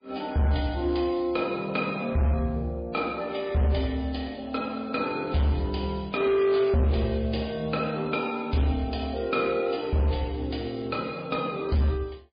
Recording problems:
lossy compression; MP3, log-spectral distance 4 dB, nothing above 4.8 kHz
distortion; hard clipping, signal-to-distortion ratio 10 dB

